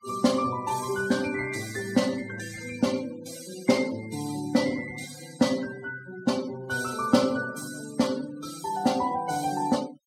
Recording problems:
denoising artefacts; signal-to-artefact ratio 16 dB

